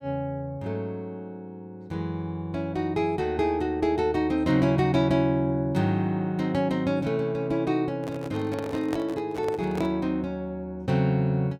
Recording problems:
handling noise; from 8 to 10 s; peak -3 dB vs average level

